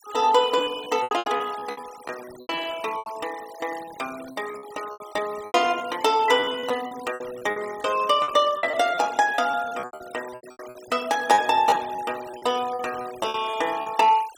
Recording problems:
denoising artefacts; signal-to-artefact ratio 18 dB
packet loss; 16% of the sound replaced, filled with repeated pitch periods

